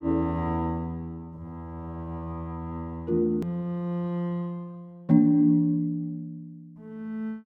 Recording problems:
edit click; at 3.5 s

